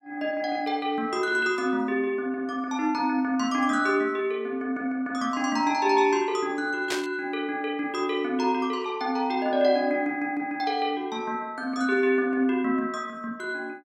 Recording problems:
burst of static; at 7 s; peak 0 dB vs average level

